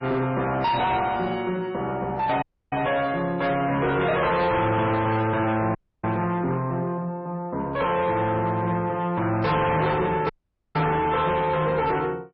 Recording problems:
lossy codec; MP3, log-spectral distance 3 dB, nothing above 5.3 kHz
distorted audio; soft clipping, signal-to-distortion ratio 6 dB
dropout; at 2.5 s, at 6 s and at 10 s

